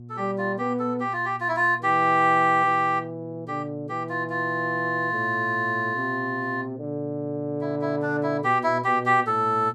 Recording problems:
hum; 60 Hz, harmonics up to 480 Hz, SNR 18 dB

